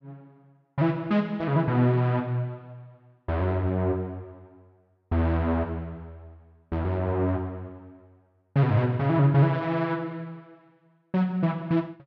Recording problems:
none

